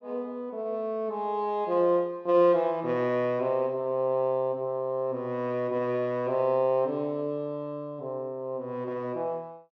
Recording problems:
none

